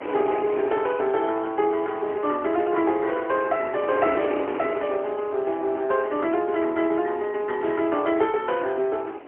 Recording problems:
phone line; 260 Hz to 3.2 kHz, AMR-NB, then MP3
wind on the microphone; below 810 Hz, SNR 12 dB

